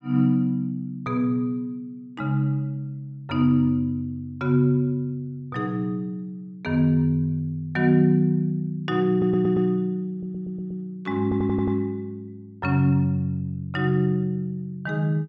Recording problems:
stutter; at 9 s, at 10 s and at 11 s

